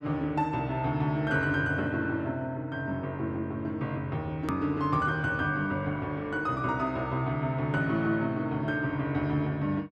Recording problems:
click at an edit; at 4.5 s

